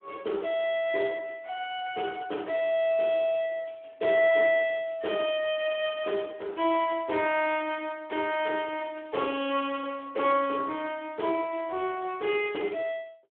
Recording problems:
phone line; 280 Hz to 3.4 kHz, Speex

